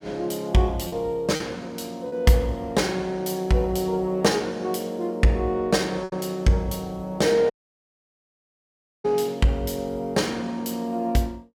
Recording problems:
packet loss; 3% of the sound replaced, filled with repeated pitch periods
audio cutting out; at 7.5 s for 1.5 s

